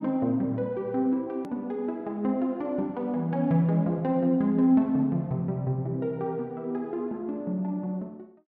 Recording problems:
hard cut with a click; at 1.5 s

